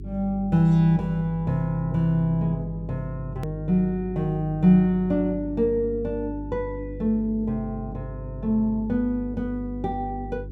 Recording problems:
hum; 50 Hz, harmonics up to 400 Hz, SNR 13 dB
edit click; at 3.5 s

